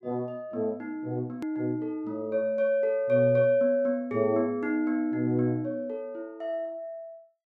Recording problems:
edit click; at 1.5 s

